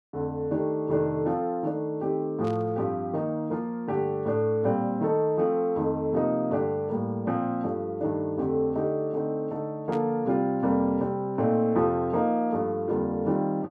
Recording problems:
burst of static; at 2.5 s and at 10 s; peak -13 dB vs average level

